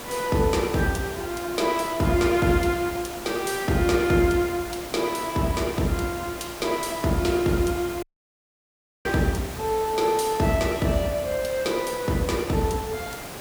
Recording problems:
hiss; slope -4 dB per octave, SNR 12 dB
audio cutting out; at 8 s for 1 s

